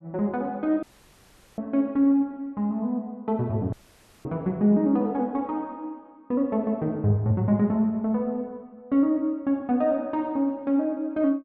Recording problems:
audio cutting out; at 1 s for 1 s and at 3.5 s for 0.5 s

